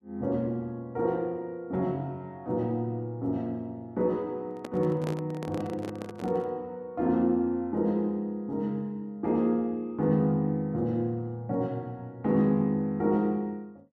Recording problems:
microphone handling noise; from 4.5 to 6.5 s; peak -2 dB vs average level

